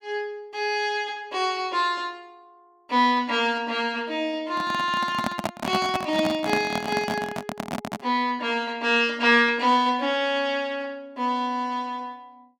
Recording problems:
microphone handling noise; from 4.5 to 8 s; peak +3 dB vs average level

